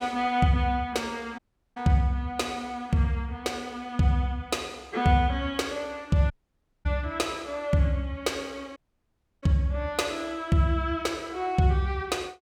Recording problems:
dropout; at 1.5 s, at 6.5 s for 0.5 s and at 9 s for 0.5 s

